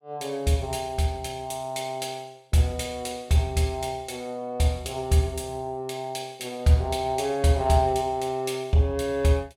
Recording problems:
none

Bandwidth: 16 kHz